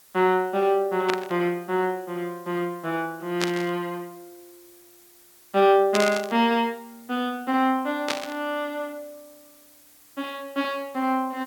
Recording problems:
background hiss; slope 0 dB per octave, SNR 26 dB
burst of static; 4 times, first at 1 s; peak +3 dB vs average level

